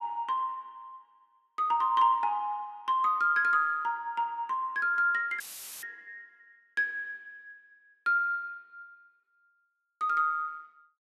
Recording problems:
audio cutting out; at 5.5 s; filled with static

